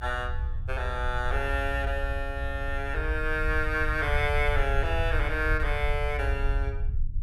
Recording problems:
low-frequency rumble; below 70 Hz, SNR 2 dB

